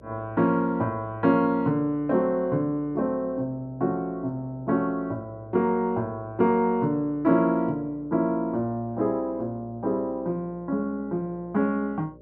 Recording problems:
hum; 60 Hz, harmonics up to 600 Hz, SNR 24 dB

